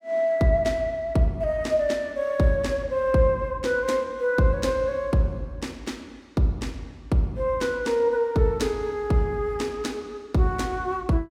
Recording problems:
none

